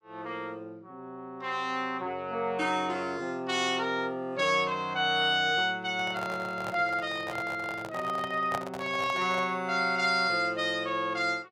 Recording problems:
microphone handling noise; from 6 to 9.5 s; peak 0 dB vs average level

